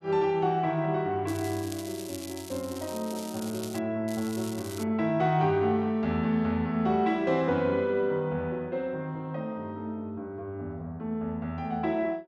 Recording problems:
crackle; from 1.5 to 4 s and at 4 s; loose cable, SNR 14 dB

